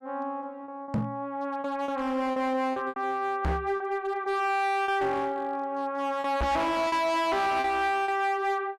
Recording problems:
distorted audio; hard clipping, signal-to-distortion ratio 6 dB
lost packets; 6% of the sound replaced, filled with repeated pitch periods
microphone thump; at 1 s, at 3.5 s and at 6.5 s; peak +3 dB vs average level

